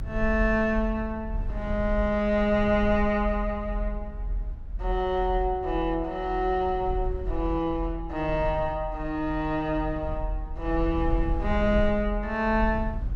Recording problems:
low-frequency rumble; below 60 Hz, strongest tone 42 Hz, SNR 7 dB

